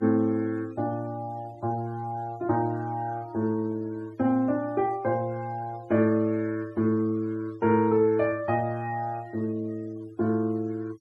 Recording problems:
denoising artefacts; signal-to-artefact ratio 26 dB

